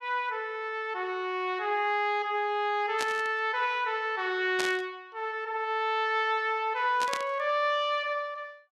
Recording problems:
static burst; at 3 s, at 4.5 s and at 7 s; peak +1 dB vs average level

